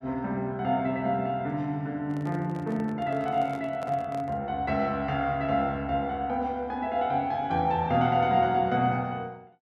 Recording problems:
microphone handling noise; from 2 to 4.5 s; peak -9 dB vs average level

